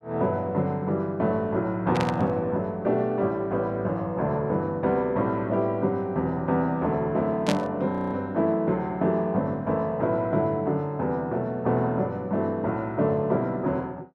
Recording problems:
burst of static; at 2 s and at 7.5 s; peak 0 dB vs average level
frozen audio; at 8 s

